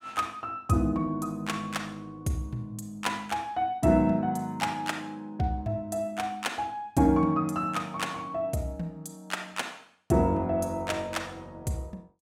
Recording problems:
none

